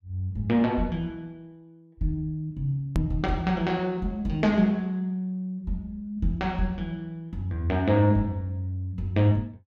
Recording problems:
click at an edit; at 3 s

